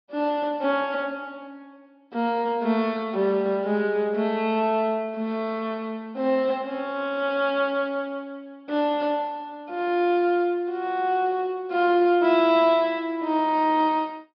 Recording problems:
treble cut off; nothing above 5.5 kHz

